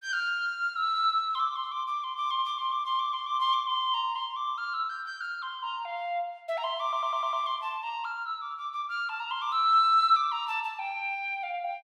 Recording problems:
audio stuttering; at 7 s

